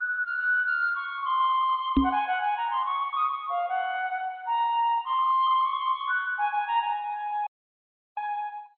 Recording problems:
codec artefacts; MP2, log-spectral distance 2 dB
microphone thump; at 2 s; peak +8 dB vs average level
dropout; at 7.5 s for 0.5 s

